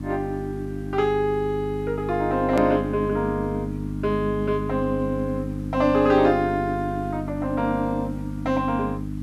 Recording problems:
mains hum; 50 Hz, harmonics up to 300 Hz, SNR 6 dB
hiss; slope -4 dB per octave, SNR 29 dB
click at an edit; at 2.5 s

